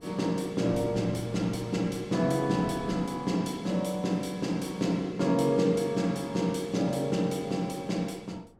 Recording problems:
wind noise; below 420 Hz, SNR 21 dB

